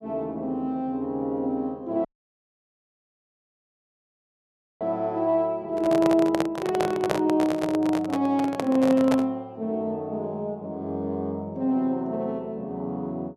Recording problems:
audio cutting out; at 2 s for 3 s
microphone handling noise; from 5.5 to 9.5 s; peak +5 dB vs average level

